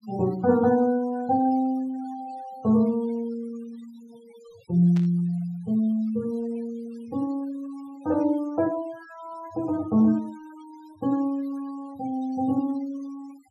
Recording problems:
denoising artefacts; signal-to-artefact ratio 24 dB
burst of static; at 5 s; peak -13 dB vs average level

